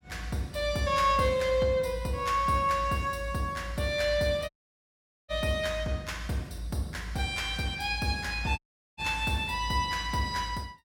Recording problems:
audio cutting out; at 4.5 s for 1 s and at 8.5 s

